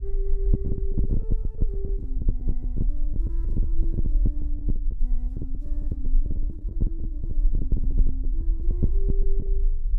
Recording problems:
low-frequency rumble; below 44 Hz, strongest tone 20 Hz, SNR -16 dB
packet loss; 10% of the sound replaced, filled with the last packet

